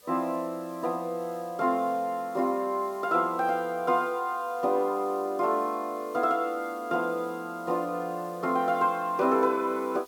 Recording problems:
background hiss; SNR 25 dB

